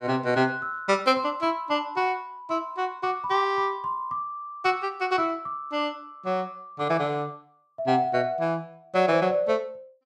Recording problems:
none

